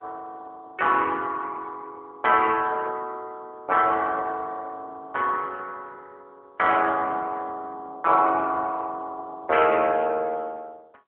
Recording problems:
phone line; 260 Hz to 3.3 kHz, AMR-NB

